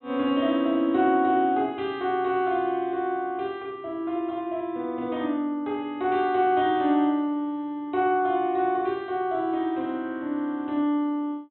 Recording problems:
low-pass filter; nothing above 3.9 kHz

